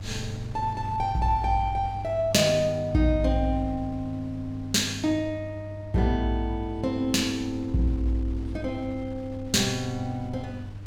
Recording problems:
hum; 50 Hz, harmonics up to 300 Hz, SNR 12 dB
wind on the microphone; below 140 Hz, SNR 18 dB

